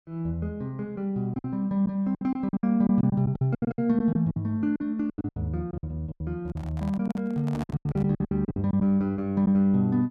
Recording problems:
lost packets; 15% of the sound replaced, filled with silence
handling noise; from 6.5 to 8 s; peak -8 dB vs average level

